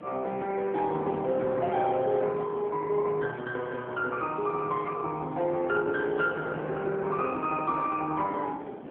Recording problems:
phone line; 280 Hz to 3.1 kHz, AMR-NB
wind noise; below 630 Hz, SNR 13 dB

